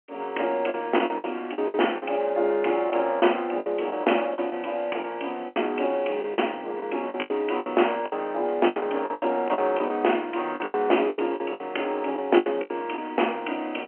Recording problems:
telephone audio; 260 Hz to 3.1 kHz, G.711
packet loss; 13% of the sound replaced, filled with the last packet

